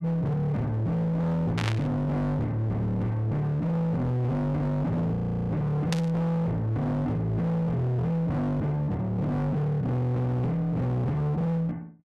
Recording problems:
distorted audio; hard clipping, signal-to-distortion ratio 8 dB
static burst; at 1.5 s and at 6 s; peak 0 dB vs average level
frozen audio; at 5 s

